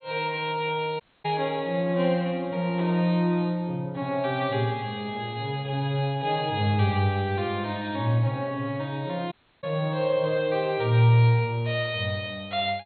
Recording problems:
treble missing; nothing above 4.3 kHz
dropout; at 1 s and at 9.5 s

